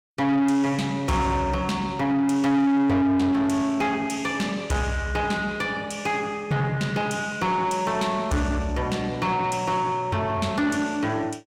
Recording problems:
distorted audio; soft clipping, signal-to-distortion ratio 8 dB

